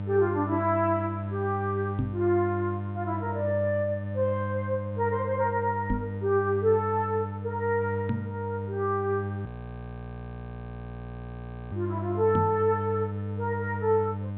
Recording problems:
treble missing; nothing above 4 kHz
mains hum; 50 Hz, harmonics up to 900 Hz, SNR 6 dB
microphone thump; 4 times, first at 2 s; peak +2 dB vs average level
audio freezing; at 9.5 s for 2.5 s

